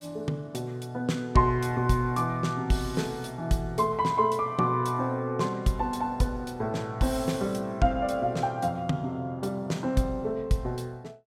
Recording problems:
none

